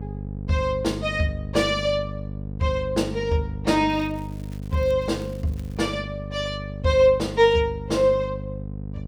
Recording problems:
electrical hum; 50 Hz, harmonics up to 550 Hz, SNR 10 dB
crackle; from 4 to 5 s and at 5 s; loose cable, SNR 29 dB

